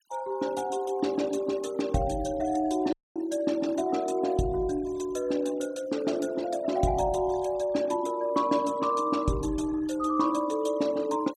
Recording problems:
noise reduction artefacts; signal-to-artefact ratio 21 dB
dropout; at 3 s

